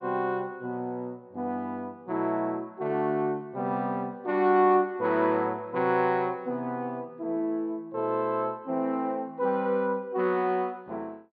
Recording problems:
treble cut off; nothing above 5 kHz

